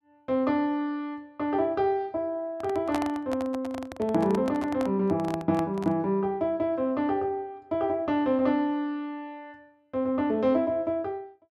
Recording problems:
handling noise; from 2.5 to 6 s; peak +1 dB vs average level

